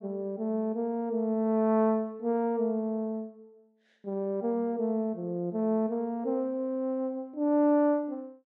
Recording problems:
none

